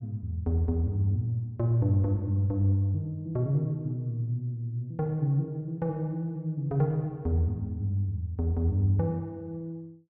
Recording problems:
none

